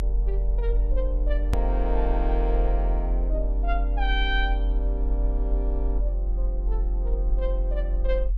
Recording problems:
low-frequency rumble; below 46 Hz, strongest tone 44 Hz, SNR -6 dB
edit click; at 1.5 s

